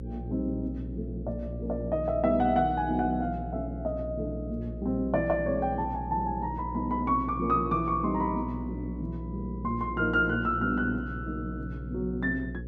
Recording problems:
electrical hum; 60 Hz, harmonics up to 540 Hz, SNR 8 dB

